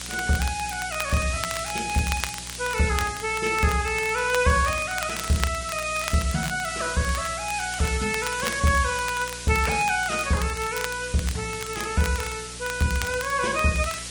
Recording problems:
codec artefacts; Vorbis, log-spectral distance 12 dB
hum; 60 Hz, harmonics up to 720 Hz, SNR 19 dB
hiss; slope +3 dB per octave, SNR 8 dB
crackling; vinyl, SNR 12 dB

